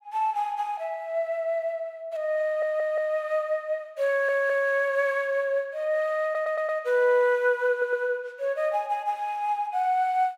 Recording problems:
stutter; 4 times, first at 2.5 s

